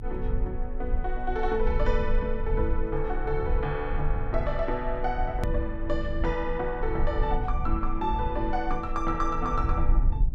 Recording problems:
rumble; below 52 Hz, strongest tone 20 Hz, SNR 2 dB
hard cut with a click; at 5.5 s

